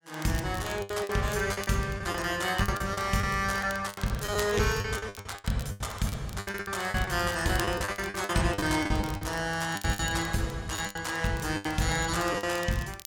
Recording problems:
crackle; vinyl, SNR 17 dB
lost packets; 15% of the sound replaced, filled with the last packet

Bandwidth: 17 kHz